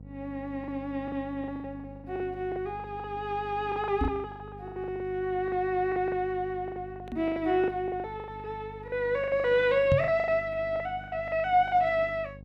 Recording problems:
hum; 50 Hz, harmonics up to 550 Hz, SNR 17 dB
packet loss; 17% of the sound replaced, filled with the last packet
microphone bump; at 4 s, at 7 s and at 10 s; peak +6 dB vs average level

